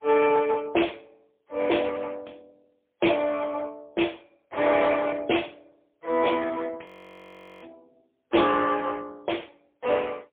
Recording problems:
telephone audio; 260 Hz to 3.4 kHz, AMR-NB, then MP3
audio freezing; at 7 s for 1 s

